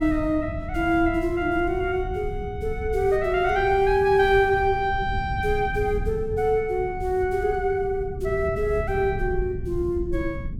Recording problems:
low-frequency rumble; below 110 Hz, SNR 10 dB

